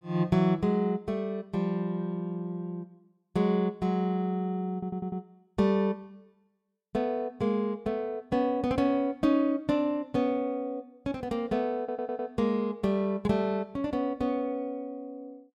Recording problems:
stutter; at 4.5 s and at 12 s

